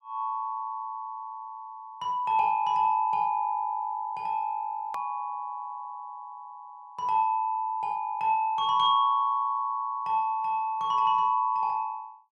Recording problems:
hard cut with a click; at 5 s

